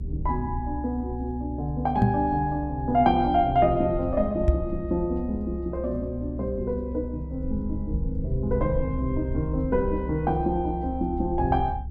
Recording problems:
rumble; below 72 Hz, strongest tone 66 Hz, SNR 7 dB
knock on the microphone; at 2 s and at 4.5 s; peak +9 dB vs average level

